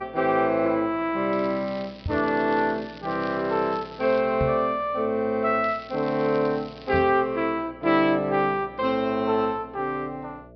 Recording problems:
treble missing; nothing above 5.5 kHz
electrical hum; 60 Hz, harmonics up to 660 Hz, SNR 25 dB
crackle; from 1.5 to 4 s and from 5.5 to 7 s; loose cable, SNR 23 dB
microphone bump; at 2 s, at 4.5 s and at 7 s; peak 0 dB vs average level

